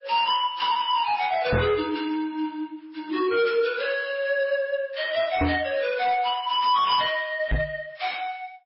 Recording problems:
lossy compression; MP3, then AAC, log-spectral distance 4 dB, nothing above 5.2 kHz
distorted audio; hard clipping, signal-to-distortion ratio 10 dB
knock on the microphone; at 1.5 s, at 5.5 s and at 7.5 s; peak +4 dB vs average level

